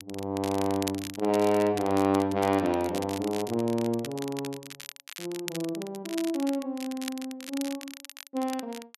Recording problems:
crackle; vinyl, SNR 12 dB

